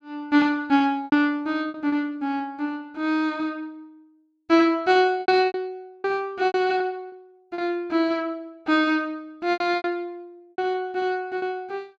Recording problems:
lost packets; 9% of the sound replaced, filled with repeated pitch periods

